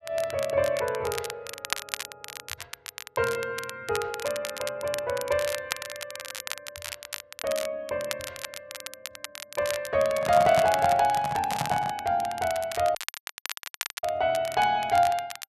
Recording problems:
crackle; vinyl, SNR 10 dB
handling noise; from 10 to 12 s; peak 0 dB vs average level
dropout; at 13 s for 1 s

